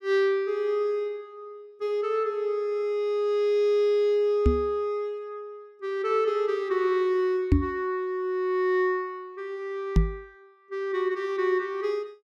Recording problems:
microphone bump; at 4.5 s, at 7.5 s and at 10 s; peak +9 dB vs average level

